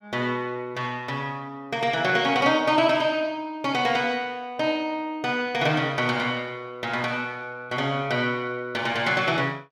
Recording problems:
none

